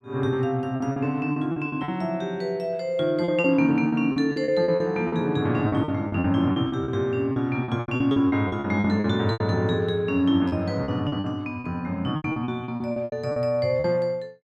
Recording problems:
lost packets; 14% of the sound replaced, filled with repeated pitch periods

